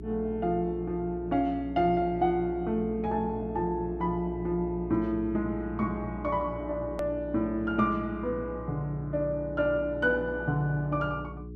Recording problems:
hum; 60 Hz, harmonics up to 420 Hz, SNR 11 dB
click at an edit; at 7 s

